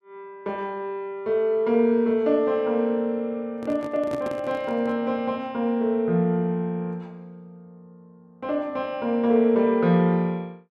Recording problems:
handling noise; from 3.5 to 5 s; peak -5 dB vs average level

